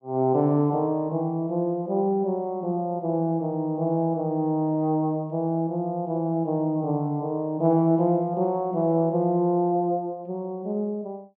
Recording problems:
none

